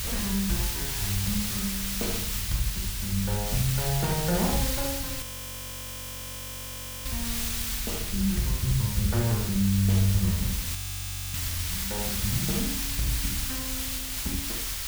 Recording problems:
background hiss; slope +3 dB per octave, SNR 1 dB
low-frequency rumble; below 86 Hz, strongest tone 42 Hz, SNR 10 dB
frozen audio; at 5 s for 2 s and at 11 s for 0.5 s

